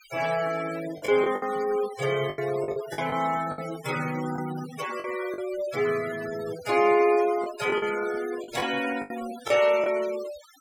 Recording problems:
denoising artefacts; signal-to-artefact ratio 14 dB
lost packets; 8% of the sound replaced, filled with the last packet

